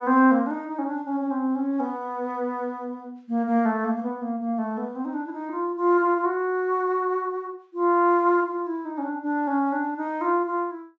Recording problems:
low-pass filter; nothing above 8 kHz

